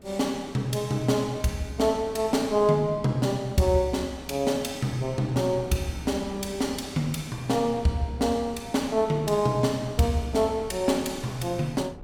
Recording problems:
wind on the microphone; below 360 Hz, SNR 19 dB

